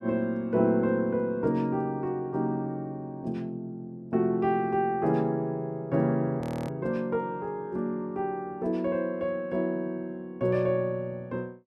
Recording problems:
audio freezing; at 6.5 s

